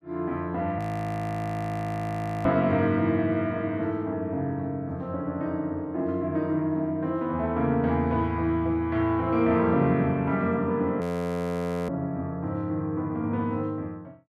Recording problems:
audio freezing; at 1 s for 1.5 s and at 11 s for 1 s

